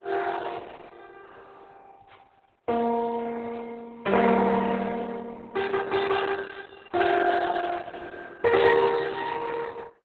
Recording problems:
lossy codec; Opus, then Opus, log-spectral distance 5 dB

